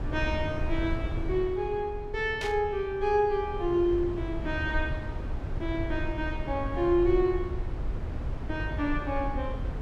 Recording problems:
low-frequency rumble; below 110 Hz, SNR 6 dB
burst of static; at 2.5 s; peak -4 dB vs average level

